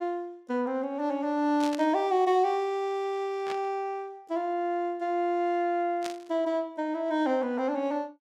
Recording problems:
burst of static; at 1.5 s, at 3.5 s and at 6 s; peak -6 dB vs average level

